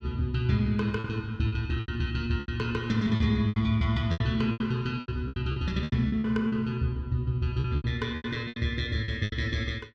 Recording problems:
packet loss; 13% of the sound replaced, filled with repeated pitch periods

